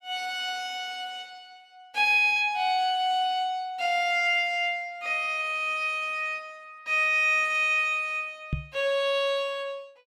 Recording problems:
microphone bump; at 8.5 s; peak 0 dB vs average level

